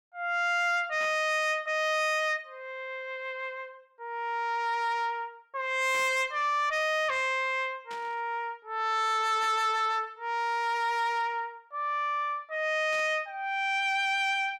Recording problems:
distorted audio; soft clipping, signal-to-distortion ratio 11 dB
static burst; 5 times, first at 1 s; peak -12 dB vs average level

